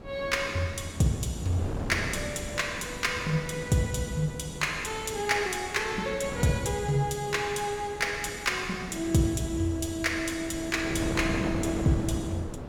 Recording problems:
wind noise; below 470 Hz, SNR 9 dB

